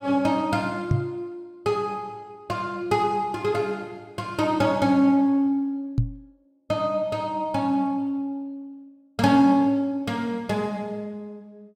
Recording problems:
microphone bump; at 1 s and at 6 s; peak +5 dB vs average level

